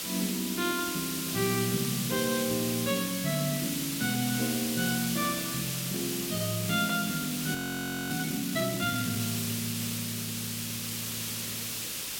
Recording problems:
hiss; SNR 1 dB
static burst; at 5.5 s and at 9 s; peak -14 dB vs average level
audio freezing; at 7.5 s for 0.5 s

